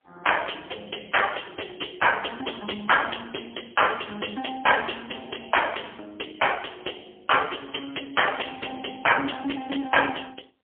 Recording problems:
phone line; 240 Hz to 3.3 kHz, AMR-NB, then MP3
distorted audio; soft clipping, signal-to-distortion ratio 7 dB

